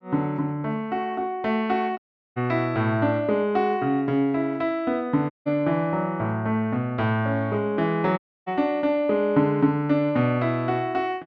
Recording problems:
dropout; at 2 s, at 5.5 s and at 8 s

